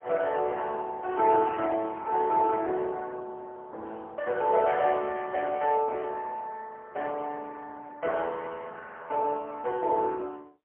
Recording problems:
phone line; 300 Hz to 2.2 kHz, AMR-NB, then MP3

